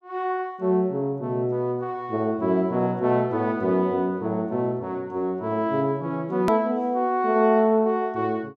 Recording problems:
edit click; at 6.5 s

